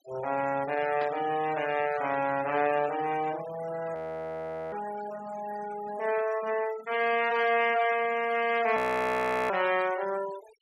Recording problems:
denoising artefacts; signal-to-artefact ratio 16 dB
static burst; at 1 s; peak -9 dB vs average level
frozen audio; at 4 s for 1 s and at 9 s for 0.5 s

